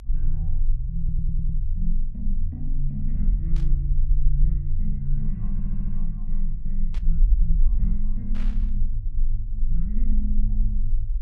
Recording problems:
low-frequency rumble; below 36 Hz, strongest tone 20 Hz, SNR -6 dB
audio stuttering; at 1 s and at 5.5 s
static burst; at 3.5 s, at 7 s and at 8.5 s; peak -9 dB vs average level

